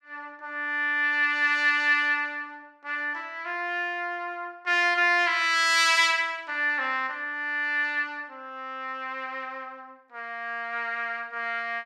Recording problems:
none

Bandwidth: 15.5 kHz